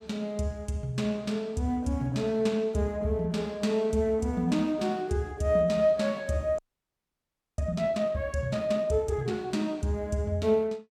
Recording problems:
audio freezing; at 6.5 s for 1 s

